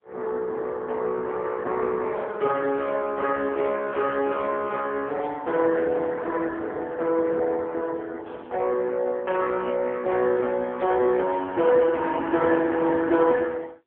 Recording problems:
phone line; 280 Hz to 3.4 kHz, AMR-NB

